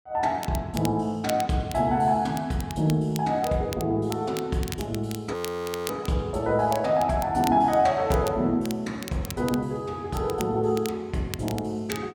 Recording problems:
crackle; vinyl, SNR 15 dB
audio freezing; at 5.5 s for 0.5 s

